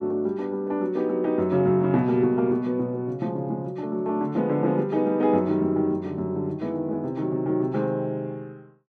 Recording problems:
none

